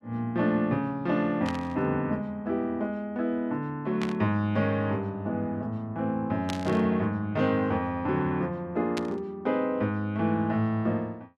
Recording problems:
burst of static; 4 times, first at 1.5 s; peak -3 dB vs average level

